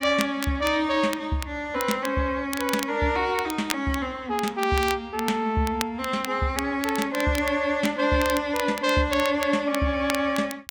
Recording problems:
crackling; vinyl, SNR 12 dB

